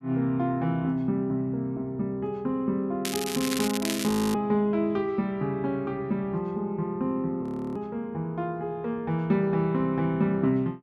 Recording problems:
crackle; from 3 to 4 s; loose cable, SNR 5 dB
audio freezing; at 4 s and at 7.5 s

